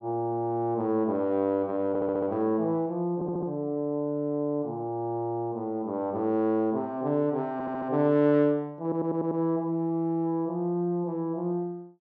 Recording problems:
audio stuttering; 4 times, first at 2 s

